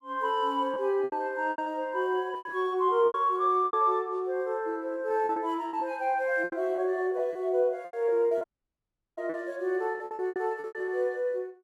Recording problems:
lost packets; 12% of the sound replaced, filled with repeated pitch periods
dropout; at 8.5 s for 0.5 s

